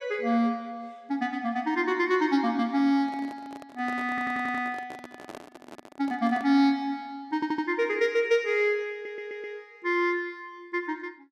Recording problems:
microphone handling noise; from 3 to 6.5 s; peak -10 dB vs average level
audio stuttering; at 4 s, at 7.5 s and at 9 s

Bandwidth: 13 kHz